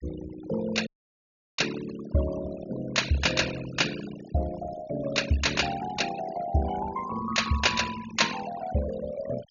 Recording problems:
treble missing; nothing above 7 kHz
noise reduction artefacts; signal-to-artefact ratio 11 dB
audio cutting out; at 1 s for 0.5 s

